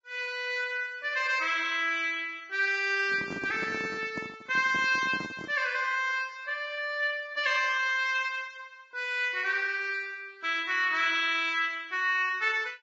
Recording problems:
lossy codec; Vorbis, log-spectral distance 3 dB, nothing above 6.3 kHz
microphone handling noise; from 3 to 5.5 s; peak -6 dB vs average level

